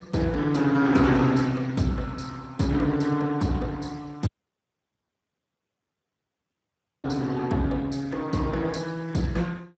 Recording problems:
lossy codec; Speex, log-spectral distance 4 dB, nothing above 7.8 kHz
dropout; at 4.5 s for 3 s

